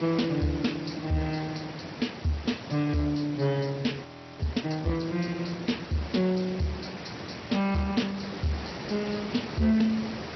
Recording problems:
lossy compression; Speex, then MP2, log-spectral distance 16 dB, nothing above 5.8 kHz
distortion; soft clipping, signal-to-distortion ratio 11 dB
hiss; slope -5 dB per octave, SNR 10 dB
frozen audio; at 4 s

